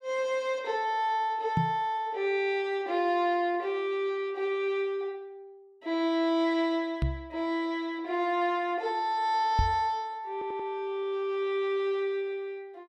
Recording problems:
microphone bump; at 1.5 s, at 7 s and at 9.5 s; peak +5 dB vs average level
audio stuttering; at 10 s

